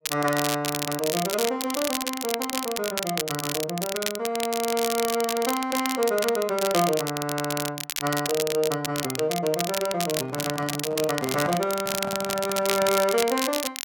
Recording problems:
crackle; vinyl, SNR 4 dB
microphone handling noise; from 10 to 13 s; peak -3 dB vs average level

